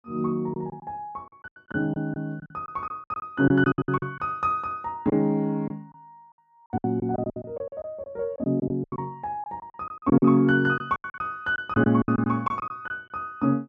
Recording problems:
lost packets; 14% of the sound replaced, filled with silence

